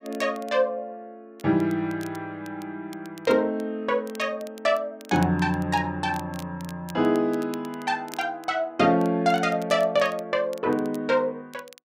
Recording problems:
crackle; vinyl, SNR 24 dB

